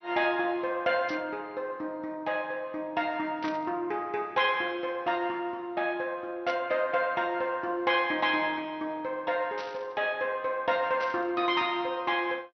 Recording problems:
lossy codec; MP2, log-spectral distance 2 dB, nothing above 5.2 kHz
burst of static; 5 times, first at 1 s; peak -7 dB vs average level

